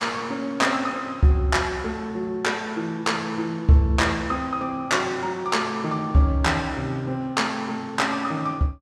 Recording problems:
none

